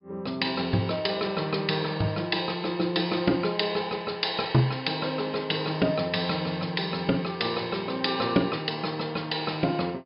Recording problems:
treble cut off; nothing above 5.5 kHz

